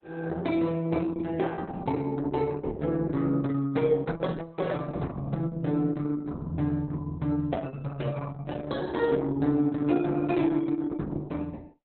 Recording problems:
lossy codec; Opus, log-spectral distance 3 dB, nothing above 4 kHz

